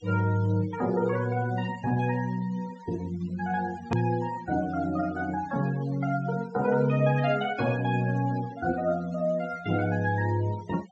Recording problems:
treble missing; nothing above 8 kHz
noise reduction artefacts; signal-to-artefact ratio 20 dB
hard cut with a click; at 4 s

